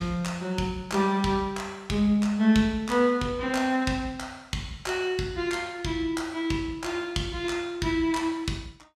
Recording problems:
none

